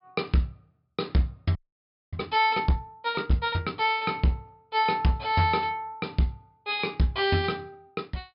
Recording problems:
treble cut off; nothing above 5.5 kHz
distortion; hard clipping, uneven, signal-to-distortion ratio 11 dB
audio freezing; at 1.5 s for 0.5 s

